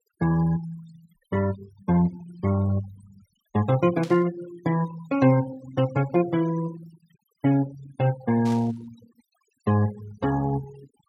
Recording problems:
noise reduction artefacts; signal-to-artefact ratio 18 dB
burst of static; at 4 s and at 8.5 s; peak -11 dB vs average level

